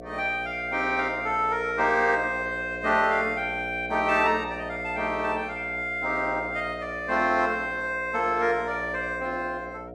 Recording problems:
hum; 60 Hz, harmonics up to 720 Hz, SNR 13 dB

